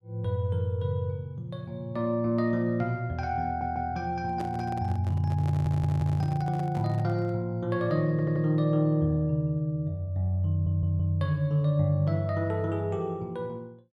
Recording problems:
stutter; 4 times, first at 3.5 s
handling noise; from 4.5 to 7.5 s; peak -7 dB vs average level

